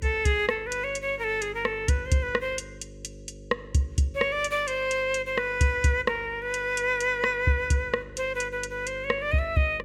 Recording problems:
hum; 50 Hz, harmonics up to 550 Hz, SNR 19 dB

